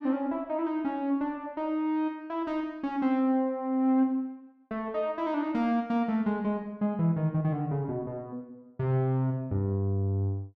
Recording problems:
none

